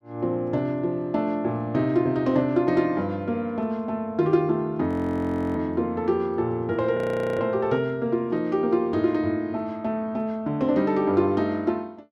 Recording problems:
audio freezing; at 5 s for 0.5 s and at 7 s

